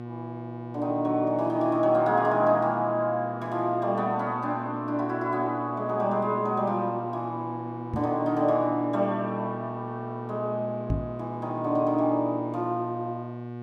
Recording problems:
hum; 60 Hz, harmonics up to 1.4 kHz, SNR 10 dB
microphone thump; at 8 s and at 11 s; peak +3 dB vs average level

